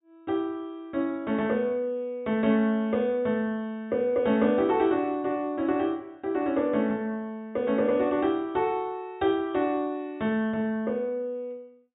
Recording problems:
treble missing; nothing above 4 kHz

